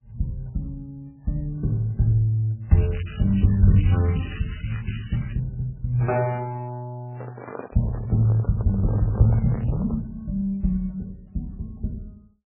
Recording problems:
codec artefacts; MP3, then MP3, log-spectral distance 3 dB, nothing above 2.4 kHz
crackle; from 3 to 5.5 s; loose cable, SNR 17 dB
handling noise; from 7 to 10 s; peak -5 dB vs average level

